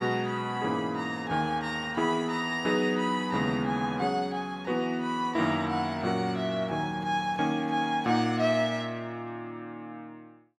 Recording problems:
none

